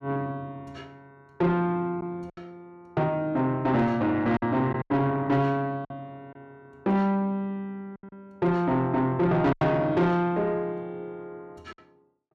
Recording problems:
distortion; soft clipping, signal-to-distortion ratio 10 dB
packet loss; 5% of the sound replaced, filled with silence

